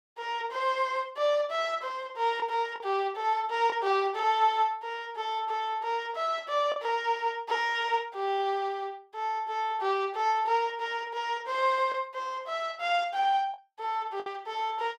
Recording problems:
lost packets; 1.7% of the sound replaced, filled with the last packet

